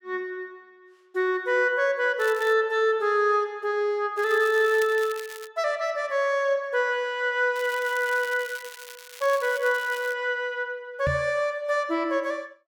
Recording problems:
crackling; at 2 s, from 4 to 5.5 s and from 7.5 to 10 s; loose cable, SNR 18 dB
microphone bump; at 11 s; peak -2 dB vs average level

